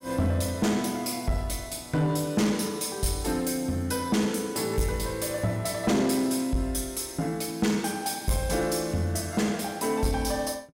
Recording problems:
distortion; soft clipping, signal-to-distortion ratio 11 dB

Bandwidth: 16 kHz